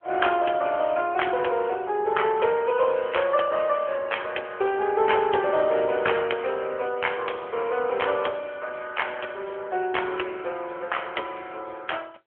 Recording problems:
telephone audio; 320 Hz to 3.3 kHz, AMR-NB

